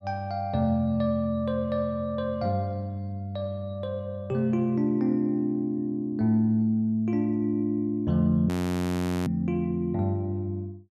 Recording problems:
audio freezing; at 8.5 s for 1 s

